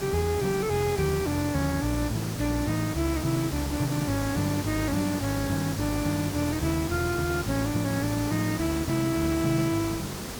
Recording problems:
hum; 50 Hz, harmonics up to 450 Hz, SNR 23 dB
hiss; SNR 7 dB

